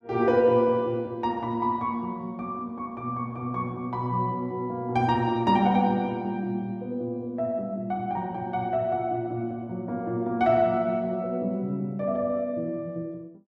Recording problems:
none

